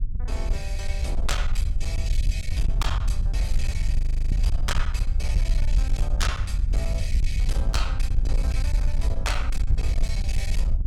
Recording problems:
distortion; hard clipping, uneven, signal-to-distortion ratio 10 dB
rumble; below 58 Hz, SNR -8 dB
audio freezing; at 4 s

